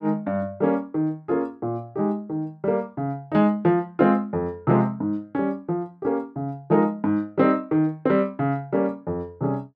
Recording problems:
none

